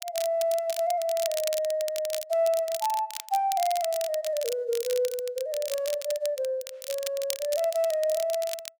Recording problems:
crackle; vinyl, SNR 10 dB

